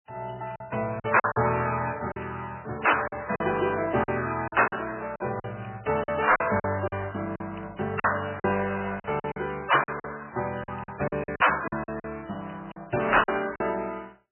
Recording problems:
lossy codec; MP3, log-spectral distance 11 dB, nothing above 3 kHz
distortion; hard clipping, signal-to-distortion ratio 7 dB
packet loss; 10% of the sound replaced, filled with silence

